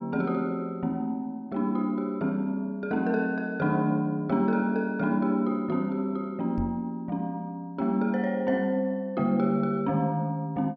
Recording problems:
microphone bump; at 6.5 s; peak -1 dB vs average level

